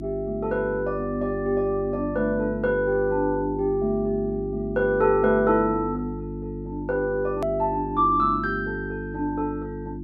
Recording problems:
electrical hum; 50 Hz, harmonics up to 350 Hz, SNR 9 dB
hard cut with a click; at 7.5 s

